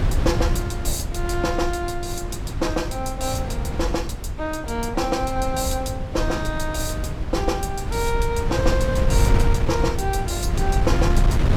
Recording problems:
wind noise; below 110 Hz, SNR 0 dB

